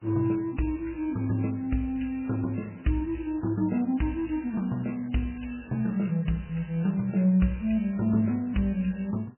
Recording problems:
lossy codec; MP3, log-spectral distance 3 dB, nothing above 2.9 kHz

